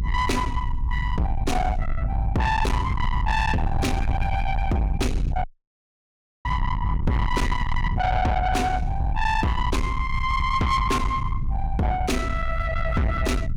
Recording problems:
distorted audio; soft clipping, signal-to-distortion ratio 7 dB
low-frequency rumble; below 130 Hz, SNR 2 dB
dropout; at 5.5 s for 1 s

